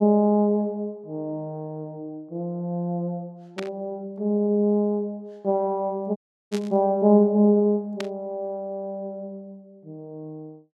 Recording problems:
burst of static; at 3.5 s, at 6.5 s and at 8 s; peak -5 dB vs average level
audio cutting out; at 6 s

